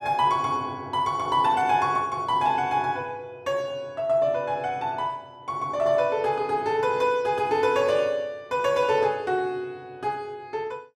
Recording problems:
none

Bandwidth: 14.5 kHz